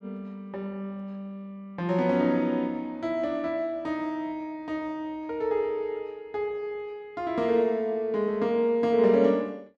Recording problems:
none

